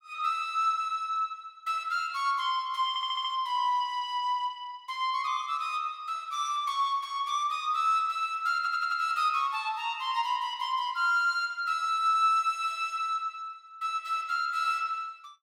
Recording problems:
audio stuttering; at 3 s and at 8.5 s

